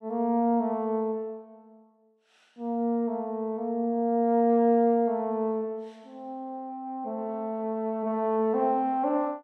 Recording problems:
none

